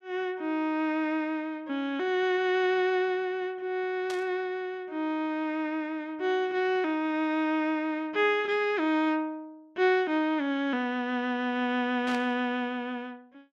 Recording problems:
static burst; at 4 s and at 12 s; peak -7 dB vs average level

